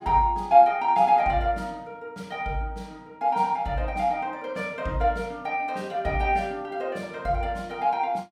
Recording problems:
none

